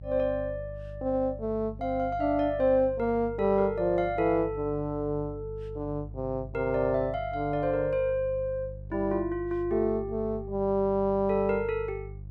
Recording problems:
hum; 50 Hz, harmonics up to 350 Hz, SNR 14 dB

